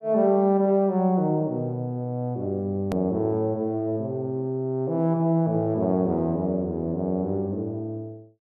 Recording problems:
click at an edit; at 3 s

